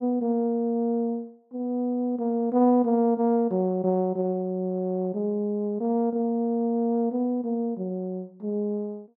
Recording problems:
none

